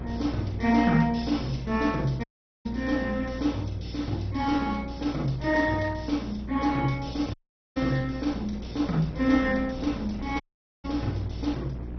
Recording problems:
lossy compression; MP2, log-spectral distance 3 dB, nothing above 5.8 kHz
hum; 60 Hz, harmonics up to 360 Hz, SNR 11 dB
wind on the microphone; below 440 Hz, SNR 16 dB
dropout; at 2 s, at 7.5 s and at 10 s

